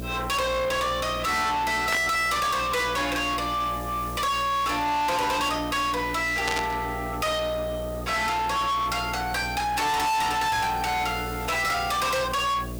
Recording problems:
distorted audio; soft clipping, signal-to-distortion ratio 6 dB
hum; 60 Hz, harmonics up to 2.3 kHz, SNR 11 dB
hiss; SNR 19 dB
static burst; at 2 s and at 6.5 s; peak 0 dB vs average level

